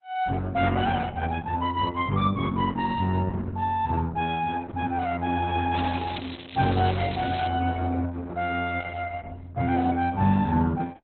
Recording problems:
codec artefacts; Opus, log-spectral distance 5 dB, nothing above 3.6 kHz
crackling; from 6 to 7.5 s; loose cable, SNR 14 dB

